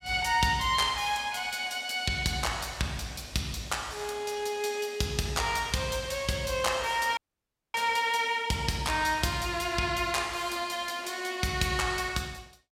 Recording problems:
audio cutting out; at 7 s for 0.5 s

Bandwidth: 16 kHz